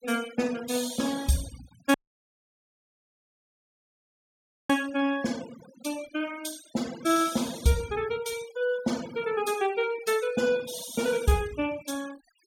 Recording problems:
noise reduction artefacts; signal-to-artefact ratio 16 dB
audio cutting out; at 2 s for 3 s

